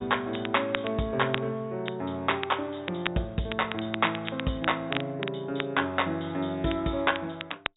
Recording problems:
treble cut off; nothing above 4 kHz
crackling; vinyl, SNR 9 dB

